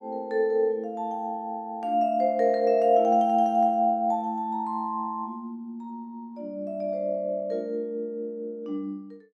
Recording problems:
none

